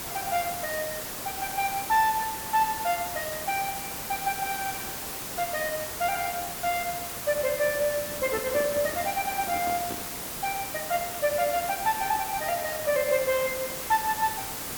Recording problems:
hiss; slope -3 dB per octave, SNR 4 dB
microphone handling noise; from 8 to 10 s; peak -4 dB vs average level

